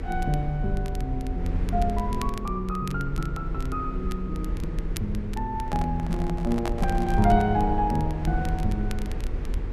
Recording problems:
electrical hum; 50 Hz, harmonics up to 500 Hz, SNR 14 dB
rumble; below 64 Hz, strongest tone 38 Hz, SNR 4 dB
crackle; vinyl, SNR 19 dB
handling noise; from 5.5 to 7.5 s; peak 0 dB vs average level

